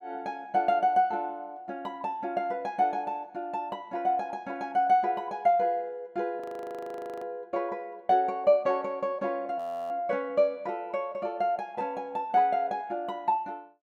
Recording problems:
audio freezing; at 6.5 s for 1 s and at 9.5 s

